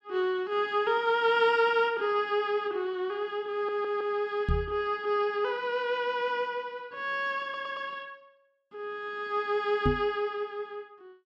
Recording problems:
stutter; at 3.5 s and at 7.5 s
microphone thump; at 4.5 s and at 10 s; peak +4 dB vs average level

